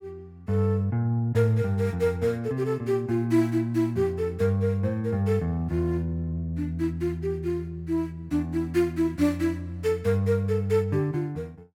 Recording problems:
none

